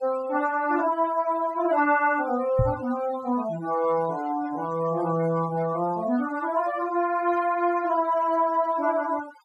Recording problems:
denoising artefacts; signal-to-artefact ratio 19 dB
knock on the microphone; at 2.5 s; peak +4 dB vs average level

